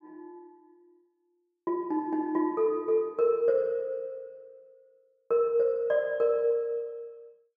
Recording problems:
none

